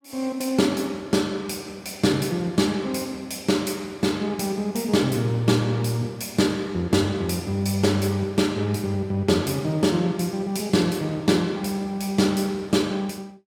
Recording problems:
none

